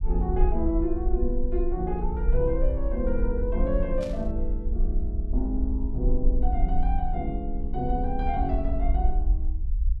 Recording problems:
rumble; below 54 Hz, SNR -1 dB
static burst; at 4 s; peak -10 dB vs average level

